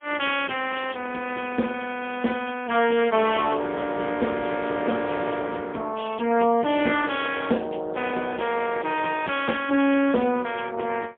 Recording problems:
telephone audio; 190 Hz to 3.4 kHz, AMR-NB, then MP3

